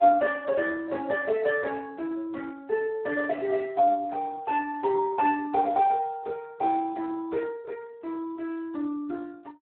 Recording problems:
phone line; 260 Hz to 3.9 kHz, Speex

